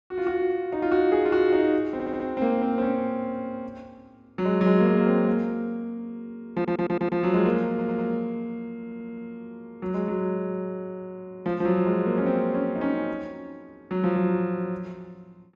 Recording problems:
audio stuttering; 4 times, first at 2 s

